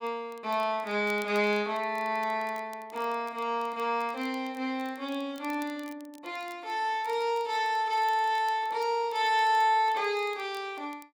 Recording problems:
crackle; vinyl, SNR 26 dB

